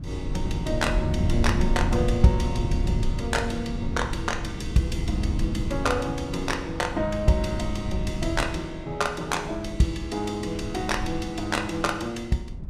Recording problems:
wind on the microphone; below 120 Hz, SNR 3 dB

